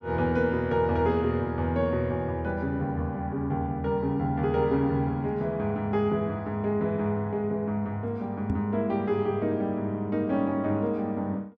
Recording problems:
knock on the microphone; at 8.5 s; peak 0 dB vs average level

